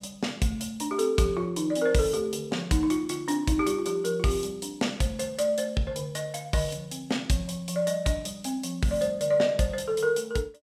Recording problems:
none

